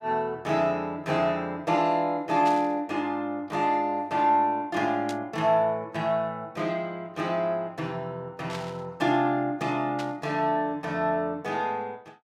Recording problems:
burst of static; 4 times, first at 2.5 s; peak -7 dB vs average level

